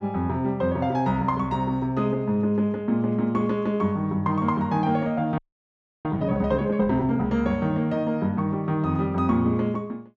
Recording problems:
audio freezing; at 5.5 s for 0.5 s

